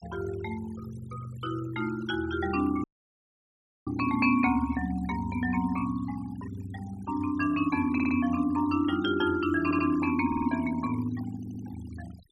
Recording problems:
denoising artefacts; signal-to-artefact ratio 18 dB
audio cutting out; at 3 s for 1 s
stutter; 4 times, first at 8 s

